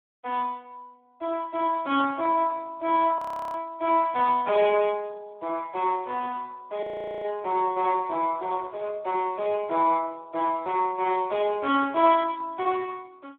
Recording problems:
phone line; 260 Hz to 3.6 kHz, Speex
frozen audio; at 3 s and at 7 s

